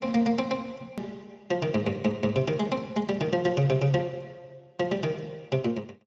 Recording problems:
lossy codec; Speex, log-spectral distance 3 dB, nothing above 14.3 kHz
hard cut with a click; at 1 s

